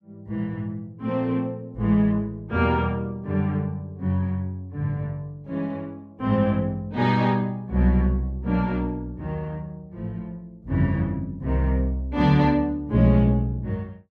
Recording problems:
none

